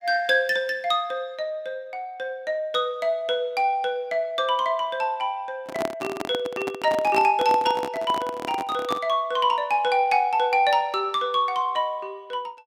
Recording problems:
handling noise; from 5.5 to 9 s; peak -1 dB vs average level

